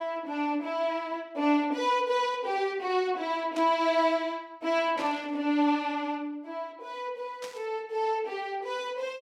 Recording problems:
burst of static; at 3.5 s, at 5 s and at 7.5 s; peak -7 dB vs average level

